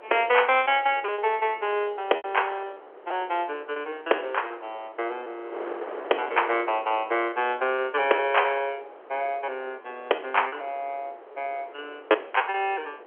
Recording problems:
phone line; 370 Hz to 3.3 kHz, G.711
wind on the microphone; below 960 Hz, SNR 17 dB
packet loss; 8% of the sound replaced, filled with repeated pitch periods

